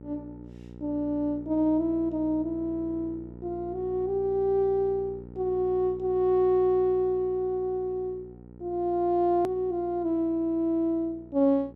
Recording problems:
electrical hum; 60 Hz, harmonics up to 960 Hz, SNR 18 dB
hard cut with a click; at 9.5 s

